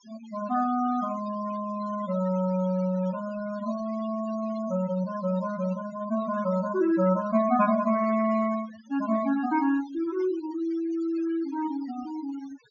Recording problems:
low-pass filter; nothing above 7 kHz
denoising artefacts; signal-to-artefact ratio 17 dB

